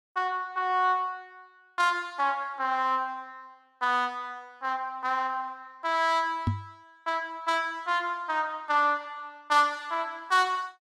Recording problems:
microphone thump; at 6.5 s; peak +4 dB vs average level

